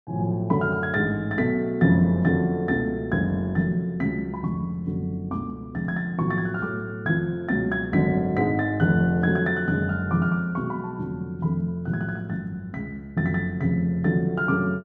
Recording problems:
none

